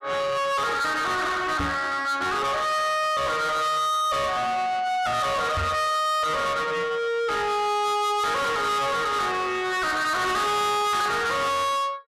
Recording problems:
distortion; soft clipping, signal-to-distortion ratio 6 dB
microphone bump; at 1.5 s and at 5.5 s; peak +3 dB vs average level

